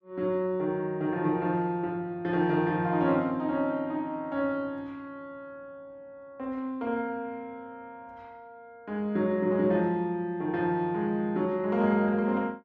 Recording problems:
none

